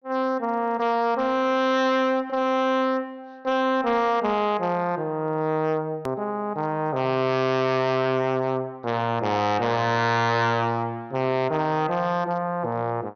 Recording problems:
treble cut off; nothing above 6.3 kHz
distorted audio; hard clipping, uneven, signal-to-distortion ratio 8 dB
hard cut with a click; at 6 s

